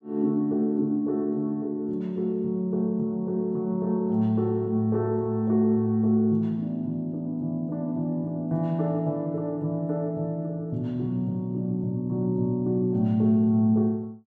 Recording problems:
none

